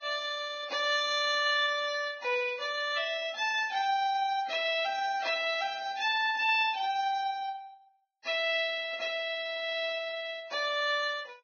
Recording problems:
codec artefacts; Vorbis, log-spectral distance 3 dB, nothing above 6.3 kHz

